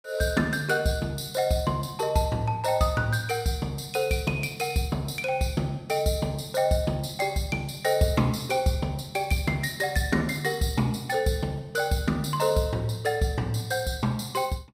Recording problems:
none

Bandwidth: 15.5 kHz